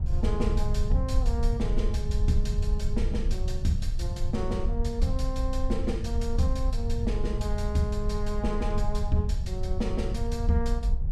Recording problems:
low-frequency rumble; below 68 Hz, SNR -2 dB

